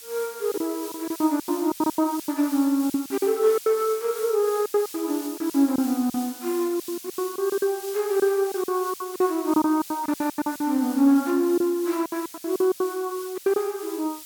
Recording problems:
background hiss; slope +4 dB per octave, SNR 14 dB
packet loss; 16% of the sound replaced, filled with silence

